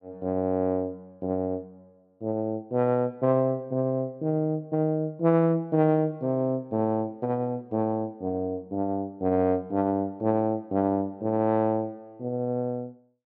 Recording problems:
none

